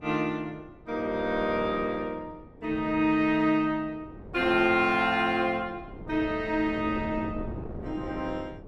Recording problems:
wind noise; below 390 Hz, SNR 16 dB

